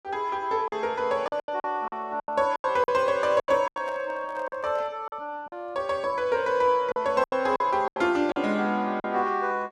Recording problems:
packet loss; 11% of the sound replaced, filled with silence
handling noise; from 3.5 to 5 s; peak -12 dB vs average level

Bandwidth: 12.5 kHz